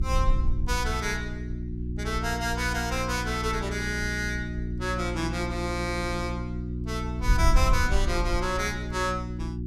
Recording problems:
electrical hum; 60 Hz, harmonics up to 360 Hz, SNR 4 dB
wind on the microphone; below 56 Hz, SNR 3 dB

